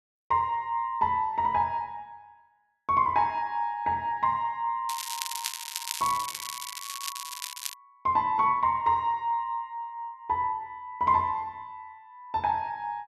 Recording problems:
crackling; from 5 to 7.5 s; loose cable, SNR 7 dB

